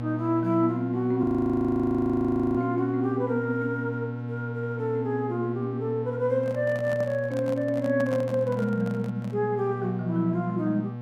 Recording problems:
hum; 60 Hz, harmonics up to 1.3 kHz, SNR 7 dB
audio freezing; at 1 s for 1.5 s
microphone handling noise; from 6.5 to 9.5 s; peak -5 dB vs average level

